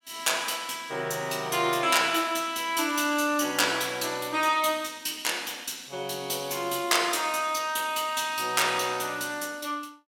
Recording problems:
none

